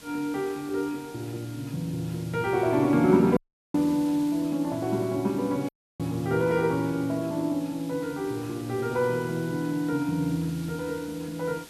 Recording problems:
hiss; slope -1 dB per octave, SNR 19 dB
audio cutting out; at 3.5 s and at 5.5 s

